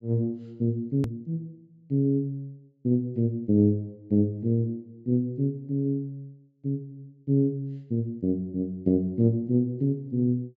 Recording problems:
treble cut off; nothing above 8 kHz
click at an edit; at 1 s

